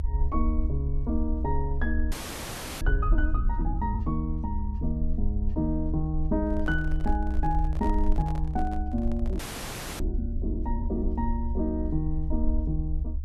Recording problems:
rumble; below 68 Hz, SNR 0 dB
frozen audio; at 2 s for 0.5 s and at 9.5 s for 0.5 s
microphone handling noise; from 6.5 to 10 s; peak -7 dB vs average level

